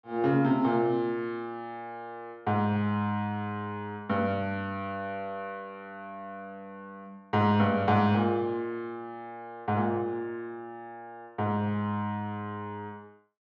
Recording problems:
none

